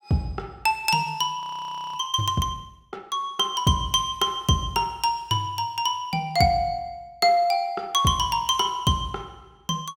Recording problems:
frozen audio; at 1.5 s for 0.5 s

